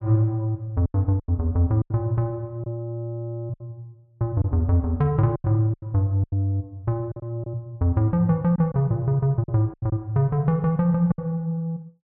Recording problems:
packet loss; 8% of the sound replaced, filled with silence

